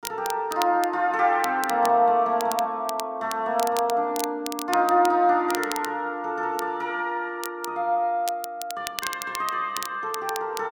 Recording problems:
crackling; vinyl, SNR 12 dB

